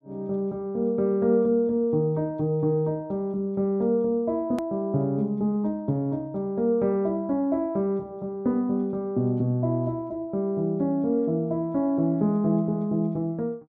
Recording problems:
click at an edit; at 4.5 s

